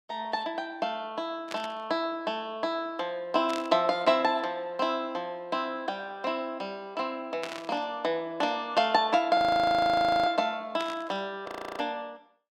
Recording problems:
static burst; 4 times, first at 1.5 s; peak -4 dB vs average level
audio freezing; at 9.5 s for 1 s and at 11 s

